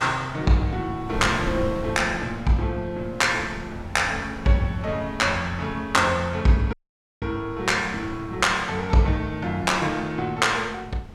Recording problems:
wind on the microphone; below 290 Hz, SNR 14 dB
audio cutting out; at 6.5 s

